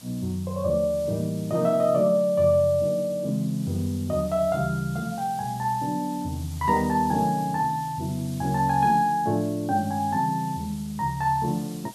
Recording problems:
hiss; SNR 20 dB

